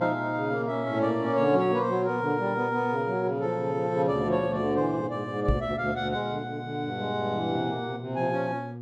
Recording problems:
hum; 60 Hz, harmonics up to 840 Hz, SNR 12 dB
knock on the microphone; at 5.5 s; peak +6 dB vs average level

